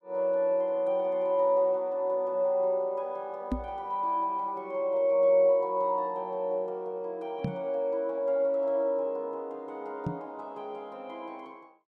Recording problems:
microphone thump; at 3.5 s, at 7.5 s and at 10 s; peak +2 dB vs average level

